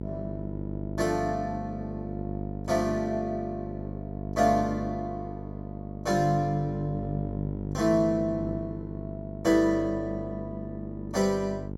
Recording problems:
hum; 50 Hz, harmonics up to 900 Hz, SNR 7 dB

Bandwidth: 16.5 kHz